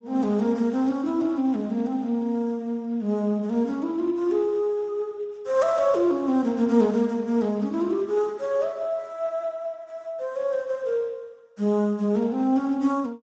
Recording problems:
lossy compression; Speex, log-spectral distance 2 dB

